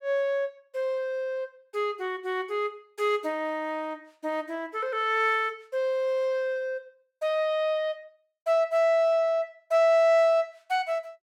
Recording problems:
none

